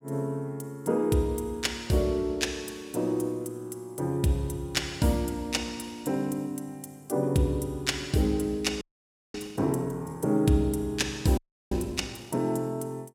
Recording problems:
frozen audio; at 9 s for 0.5 s and at 11 s

